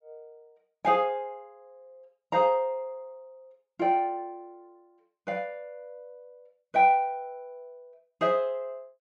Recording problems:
none

